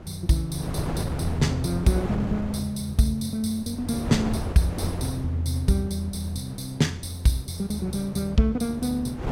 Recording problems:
wind on the microphone; below 470 Hz, SNR 9 dB

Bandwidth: 16 kHz